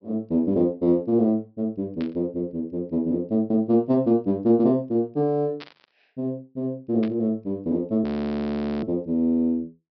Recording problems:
treble missing; nothing above 5.5 kHz
static burst; at 2 s, at 5.5 s and at 7 s; peak -12 dB vs average level
audio freezing; at 8 s for 1 s

